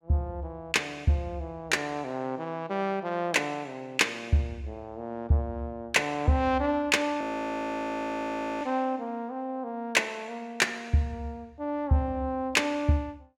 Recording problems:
audio freezing; at 7 s for 1.5 s

